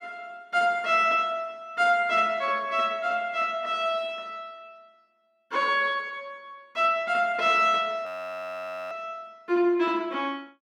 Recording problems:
audio freezing; at 8 s for 1 s

